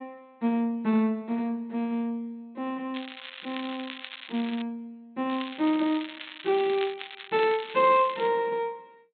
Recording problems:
treble cut off; nothing above 4 kHz
crackle; from 3 to 4.5 s and from 5.5 to 8.5 s; loose cable, SNR 13 dB

